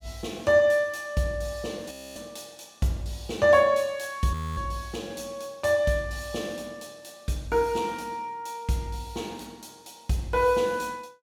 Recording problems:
frozen audio; at 2 s and at 4.5 s

